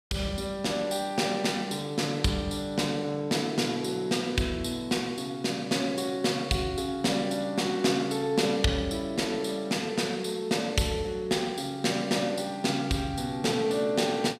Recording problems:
none

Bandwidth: 15 kHz